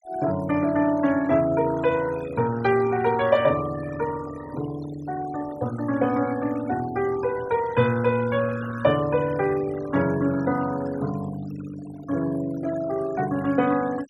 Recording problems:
noise reduction artefacts; signal-to-artefact ratio 18 dB

